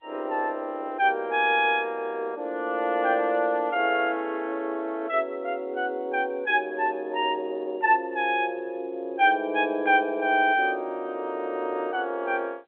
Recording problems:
telephone audio; 280 Hz to 3.5 kHz, G.711

